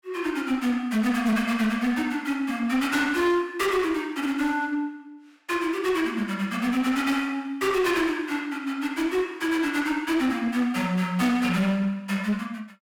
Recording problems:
distortion; hard clipping, uneven, signal-to-distortion ratio 11 dB

